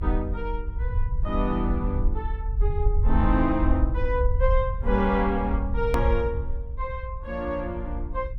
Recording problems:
low-frequency rumble; below 70 Hz, SNR 0 dB
click at an edit; at 6 s

